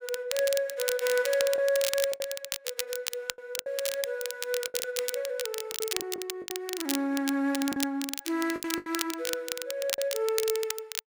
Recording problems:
crackling; vinyl, SNR 3 dB
lost packets; 8% of the sound replaced, filled with the last packet

